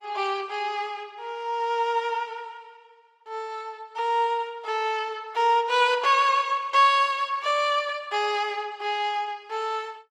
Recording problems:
lossy codec; Opus, log-spectral distance 2 dB

